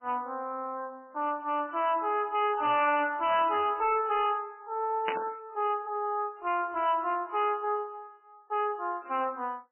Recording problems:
lossy compression; MP3, log-spectral distance 2 dB, nothing above 2.5 kHz
distorted audio; hard clipping, signal-to-distortion ratio 10 dB
burst of static; at 5 s; peak 0 dB vs average level

